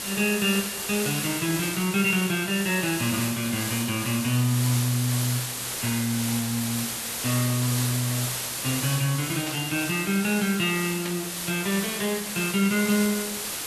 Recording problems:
background hiss; slope 0 dB per octave, SNR 3 dB
burst of static; at 9.5 s and at 11 s; peak -5 dB vs average level

